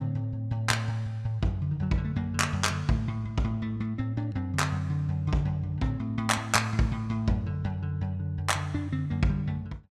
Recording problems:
none

